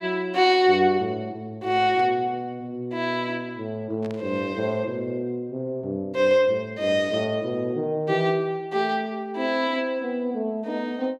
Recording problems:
static burst; at 2 s and at 4 s; peak -15 dB vs average level

